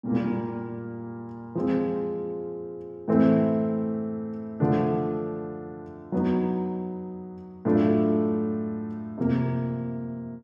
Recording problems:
none

